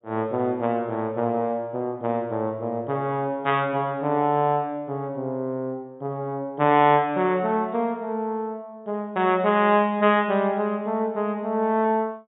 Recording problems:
treble missing; nothing above 4 kHz

